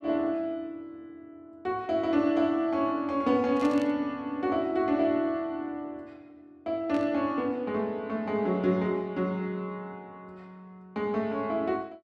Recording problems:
static burst; at 3.5 s and at 7 s; peak -12 dB vs average level

